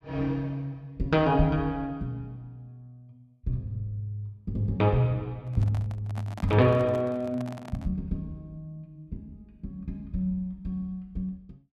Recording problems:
microphone handling noise; from 5.5 to 8 s; peak -7 dB vs average level

